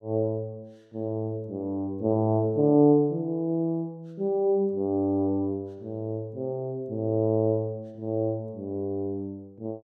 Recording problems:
none

